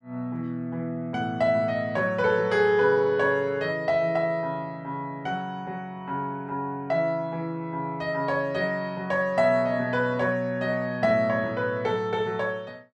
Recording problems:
none

